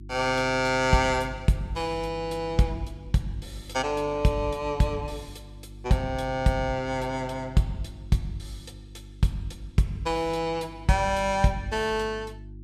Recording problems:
hum; 50 Hz, harmonics up to 350 Hz, SNR 17 dB

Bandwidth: 15 kHz